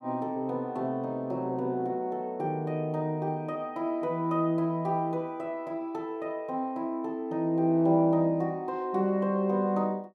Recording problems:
none

